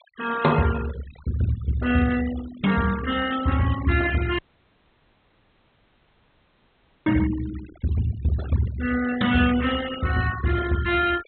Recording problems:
treble missing; nothing above 4.1 kHz
noise reduction artefacts; signal-to-artefact ratio 14 dB
dropout; at 4.5 s for 2.5 s

